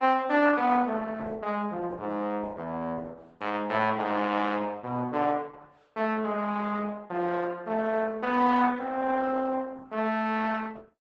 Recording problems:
codec artefacts; Opus, log-spectral distance 3 dB

